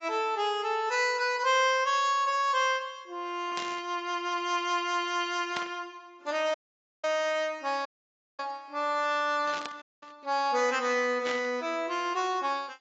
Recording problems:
lossy codec; AAC, log-spectral distance 2 dB
static burst; 4 times, first at 3.5 s; peak -3 dB vs average level
audio cutting out; at 6.5 s, at 8 s for 0.5 s and at 10 s

